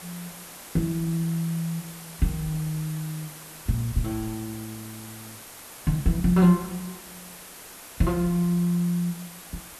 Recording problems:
background hiss; slope -2 dB per octave, SNR 15 dB

